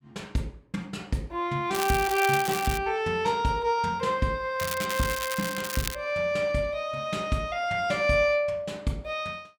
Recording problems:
crackling; from 1.5 to 3 s and from 4.5 to 6 s; loose cable, SNR 7 dB

